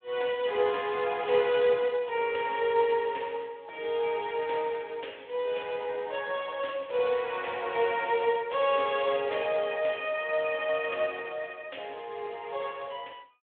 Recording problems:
phone line; 320 Hz to 3.6 kHz, Speex

